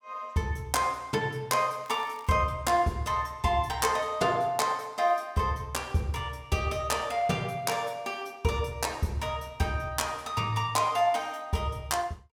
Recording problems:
crackling; at 2 s; loose cable, SNR 28 dB

